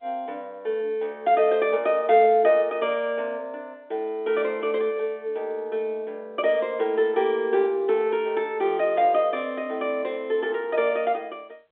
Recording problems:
phone line; 280 Hz to 3.6 kHz, G.711

